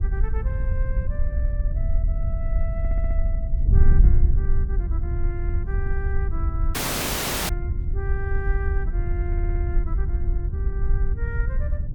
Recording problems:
wind noise; below 68 Hz, SNR -13 dB
audio stuttering; at 3 s and at 9.5 s
audio cutting out; at 6.5 s for 1 s

